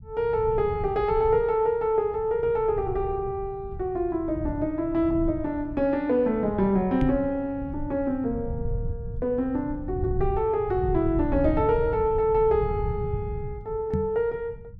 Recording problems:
rumble; below 120 Hz, SNR 10 dB
knock on the microphone; at 7 s and at 14 s; peak +2 dB vs average level

